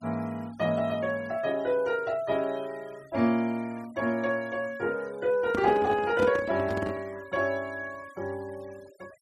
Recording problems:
denoising artefacts; signal-to-artefact ratio 24 dB
microphone handling noise; from 5.5 to 7 s; peak +1 dB vs average level

